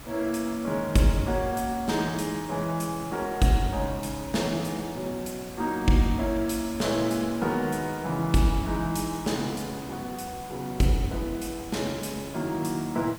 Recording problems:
background hiss; slope -4 dB per octave, SNR 15 dB

